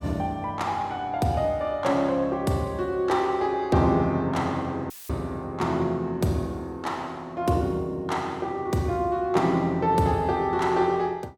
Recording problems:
audio cutting out; at 5 s; filled with static

